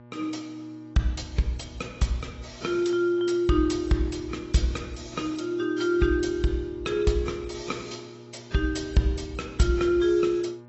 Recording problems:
codec artefacts; AAC, log-spectral distance 4 dB, nothing above 7.8 kHz
hum; 60 Hz, harmonics up to 2 kHz, SNR 22 dB

